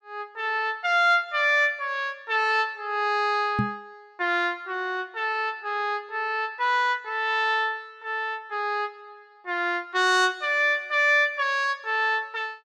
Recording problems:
microphone bump; at 3.5 s; peak +2 dB vs average level

